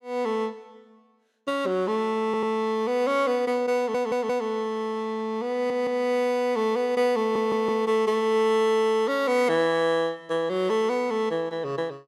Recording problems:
stutter; 4 times, first at 2.5 s

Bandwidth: 16.5 kHz